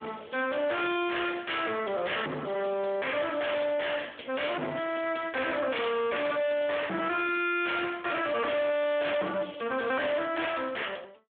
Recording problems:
telephone audio; 220 Hz to 3.6 kHz, Speex
distortion; hard clipping, signal-to-distortion ratio 6 dB

